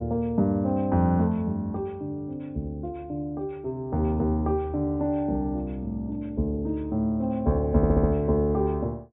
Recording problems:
low-pass filter; nothing above 4 kHz
audio stuttering; at 8 s

